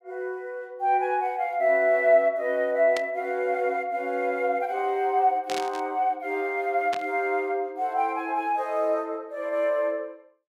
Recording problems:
burst of static; at 3 s, at 5.5 s and at 7 s; peak -4 dB vs average level

